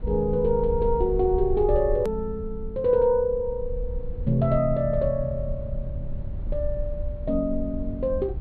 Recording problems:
treble missing; nothing above 4.5 kHz
low-frequency rumble; below 68 Hz, SNR 9 dB
click at an edit; at 2 s

